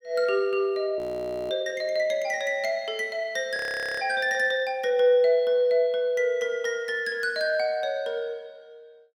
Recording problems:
audio freezing; at 1 s for 0.5 s and at 3.5 s

